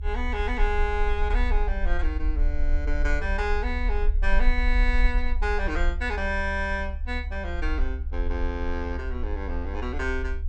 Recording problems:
low-frequency rumble; below 52 Hz, strongest tone 22 Hz, SNR -1 dB

